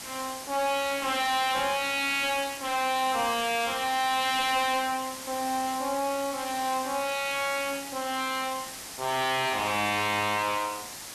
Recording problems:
distortion; soft clipping, signal-to-distortion ratio 7 dB
background hiss; slope 0 dB per octave, SNR 10 dB

